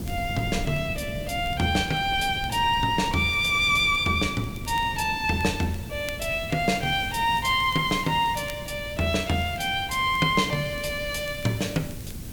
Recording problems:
hiss; slope +1 dB per octave, SNR 21 dB
wind noise; below 200 Hz, SNR 13 dB
crackling; vinyl, SNR 27 dB

